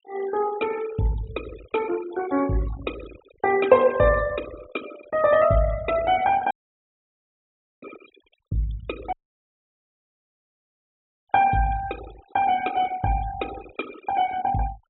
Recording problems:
treble missing; nothing above 3.9 kHz
denoising artefacts; signal-to-artefact ratio 17 dB
audio cutting out; at 6.5 s for 1.5 s and at 9 s for 2 s

